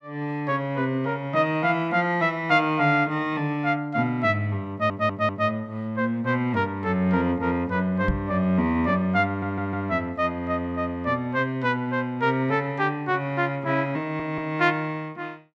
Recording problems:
stutter; at 4.5 s, at 9.5 s and at 14 s
knock on the microphone; at 8 s; peak +2 dB vs average level

